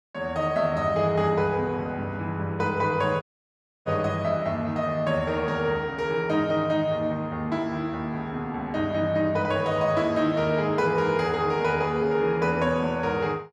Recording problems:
dropout; at 3 s for 0.5 s

